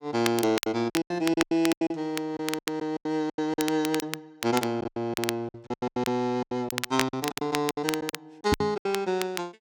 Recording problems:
crackle; vinyl, SNR 7 dB
lost packets; 18% of the sound replaced, filled with silence
knock on the microphone; at 8.5 s; peak +6 dB vs average level

